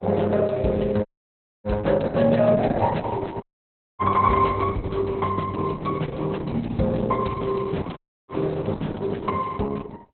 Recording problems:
lossy compression; Opus, log-spectral distance 4 dB, nothing above 4 kHz
dropout; at 1 s for 0.5 s, at 3.5 s for 0.5 s and at 8 s

